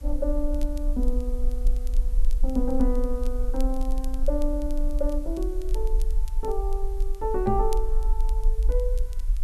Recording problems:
background hiss; slope -2 dB per octave, SNR 24 dB
low-frequency rumble; below 42 Hz, strongest tone 22 Hz, SNR -2 dB
crackle; vinyl, SNR 22 dB
microphone bump; at 7.5 s; peak +8 dB vs average level

